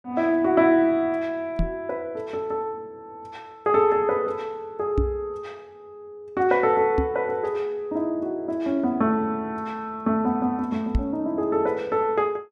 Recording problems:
microphone bump; 4 times, first at 1.5 s; peak +4 dB vs average level

